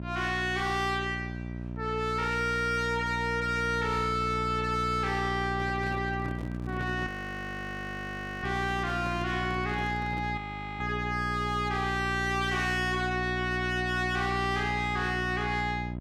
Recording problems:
distortion; soft clipping, signal-to-distortion ratio 7 dB
hum; 60 Hz, harmonics up to 960 Hz, SNR 6 dB
handling noise; from 5.5 to 10 s; peak -3 dB vs average level
frozen audio; at 7 s for 1.5 s and at 10 s

